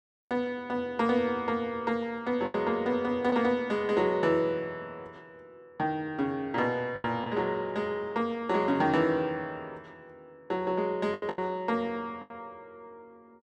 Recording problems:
packet loss; 3% of the sound replaced, filled with the last packet

